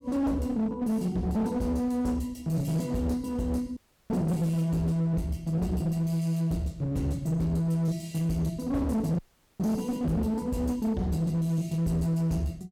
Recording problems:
distorted audio; hard clipping, uneven, signal-to-distortion ratio 9 dB
audio cutting out; at 4 s and at 9 s

